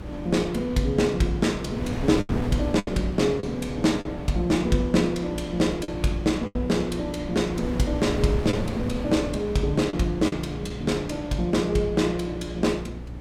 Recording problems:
hum; 60 Hz, harmonics up to 420 Hz, SNR 15 dB
wind on the microphone; below 360 Hz, SNR 11 dB
packet loss; 3% of the sound replaced, filled with the last packet

